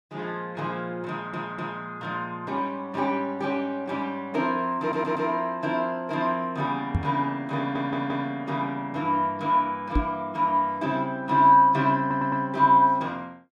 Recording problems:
stutter; 4 times, first at 1 s
microphone bump; at 7 s and at 10 s; peak +4 dB vs average level

